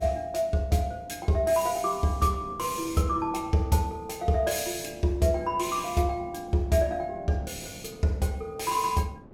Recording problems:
wind noise; below 400 Hz, SNR 19 dB

